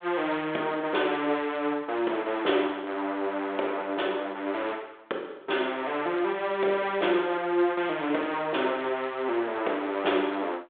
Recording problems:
telephone audio; 260 Hz to 3.6 kHz, G.726

